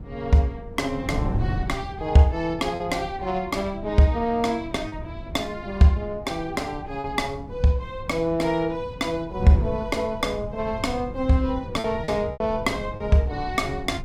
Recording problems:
wind noise; below 170 Hz, SNR 11 dB
packet loss; 2% of the sound replaced, filled with repeated pitch periods

